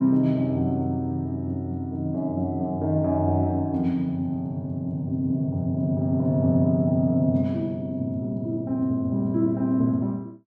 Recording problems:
none

